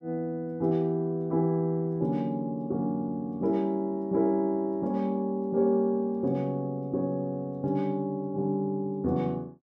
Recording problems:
none

